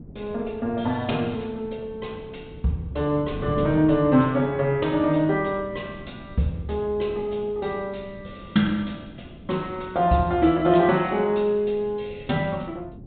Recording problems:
treble missing; nothing above 4 kHz
wind on the microphone; below 270 Hz, SNR 17 dB

